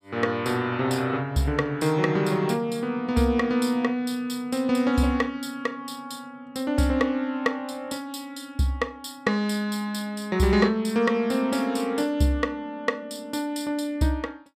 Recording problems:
none

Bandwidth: 14.5 kHz